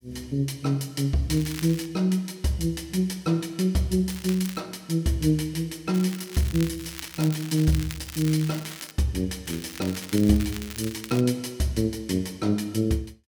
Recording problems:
crackling; 4 times, first at 1.5 s; loose cable, SNR 13 dB

